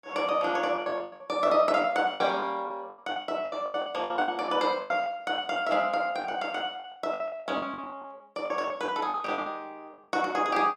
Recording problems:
packet loss; 17% of the sound replaced, filled with the last packet

